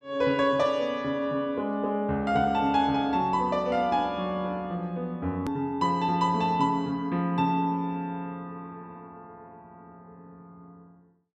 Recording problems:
hard cut with a click; at 5.5 s

